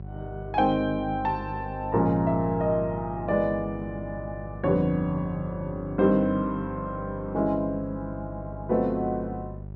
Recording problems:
hum; 50 Hz, harmonics up to 750 Hz, SNR 12 dB

